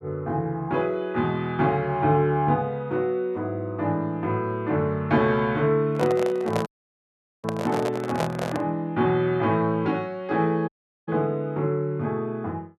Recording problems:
handling noise; from 6 to 8.5 s; peak +1 dB vs average level
dropout; at 6.5 s for 1 s and at 11 s

